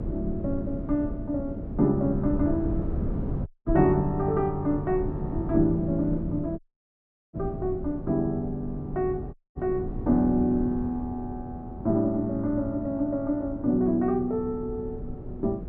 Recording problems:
hum; 50 Hz, harmonics up to 400 Hz, SNR 26 dB
wind noise; below 220 Hz, SNR 8 dB
audio cutting out; at 3.5 s, at 6.5 s for 0.5 s and at 9.5 s

